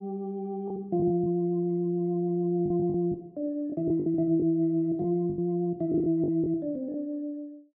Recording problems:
lost packets; 7% of the sound replaced, filled with the last packet

